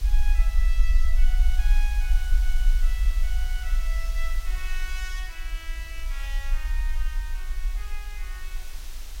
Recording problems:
hiss; slope 0 dB per octave, SNR 5 dB
rumble; below 42 Hz, strongest tone 24 Hz, SNR -12 dB

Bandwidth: 16 kHz